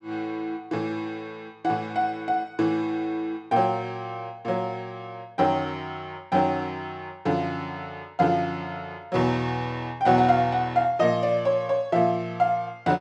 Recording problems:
none

